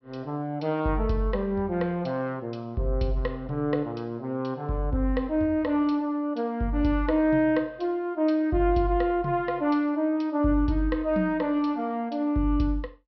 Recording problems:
treble cut off; nothing above 5.6 kHz

